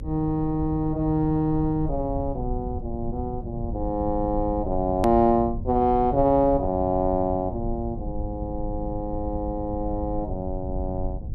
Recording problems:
electrical hum; 50 Hz, harmonics up to 550 Hz, SNR 19 dB
low-frequency rumble; below 100 Hz, SNR 9 dB
edit click; at 5 s

